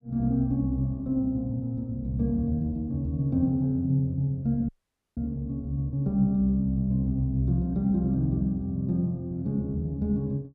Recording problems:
audio cutting out; at 4.5 s

